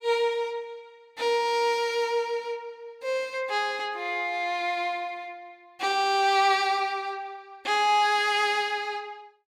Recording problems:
none

